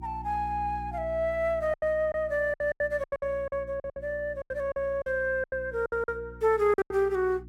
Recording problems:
electrical hum; 60 Hz, harmonics up to 360 Hz, SNR 17 dB
packet loss; 13% of the sound replaced, filled with silence

